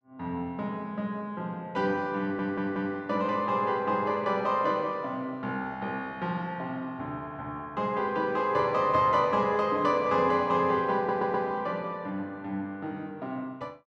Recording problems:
audio stuttering; at 2 s and at 11 s

